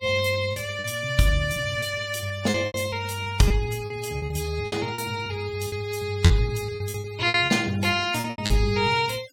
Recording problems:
noise reduction artefacts; signal-to-artefact ratio 18 dB
packet loss; 11% of the sound replaced, filled with repeated pitch periods

